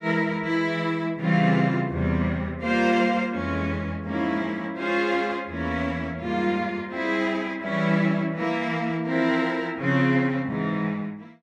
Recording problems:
none

